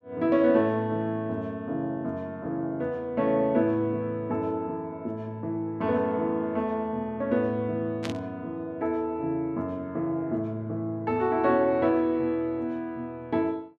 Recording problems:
burst of static; at 8 s; peak -4 dB vs average level

